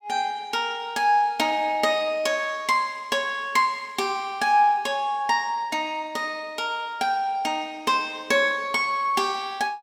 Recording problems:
none

